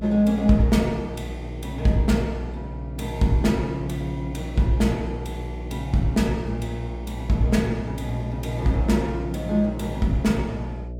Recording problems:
electrical hum; 60 Hz, harmonics up to 660 Hz, SNR 10 dB

